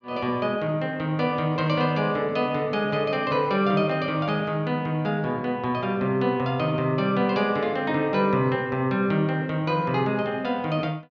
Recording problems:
none

